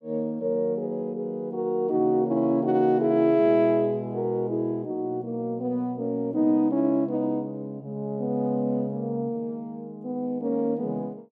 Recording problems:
none

